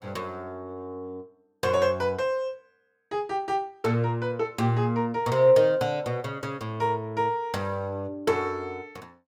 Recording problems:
none

